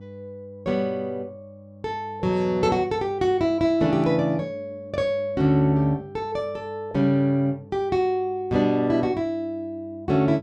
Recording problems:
electrical hum; 50 Hz, harmonics up to 800 Hz, SNR 22 dB

